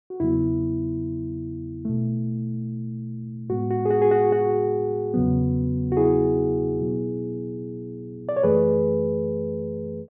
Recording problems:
none

